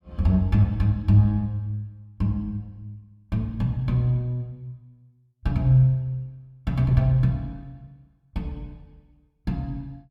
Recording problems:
none

